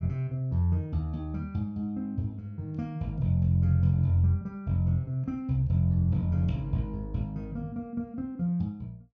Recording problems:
none

